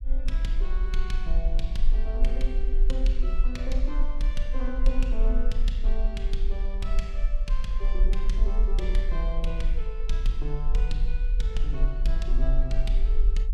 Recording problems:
low-frequency rumble; below 40 Hz, strongest tone 22 Hz, SNR -9 dB

